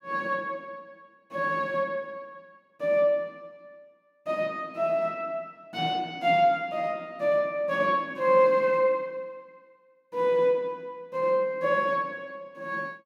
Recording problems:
none

